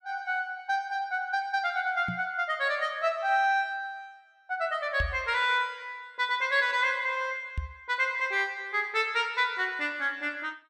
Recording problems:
knock on the microphone; at 2 s, at 5 s and at 7.5 s; peak -1 dB vs average level

